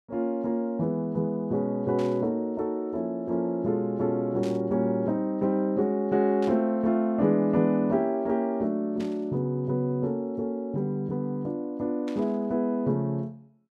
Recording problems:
burst of static; 5 times, first at 2 s; peak -13 dB vs average level

